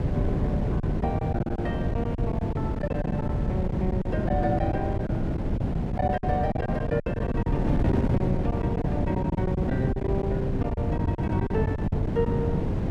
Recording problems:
wind noise; below 250 Hz, SNR -3 dB
packet loss; 11% of the sound replaced, filled with silence

